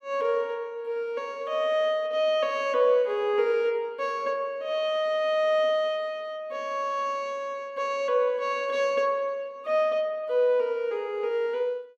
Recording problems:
none

